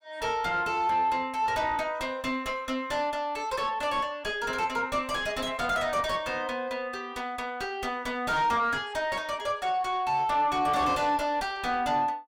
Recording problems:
distorted audio; soft clipping, signal-to-distortion ratio 8 dB

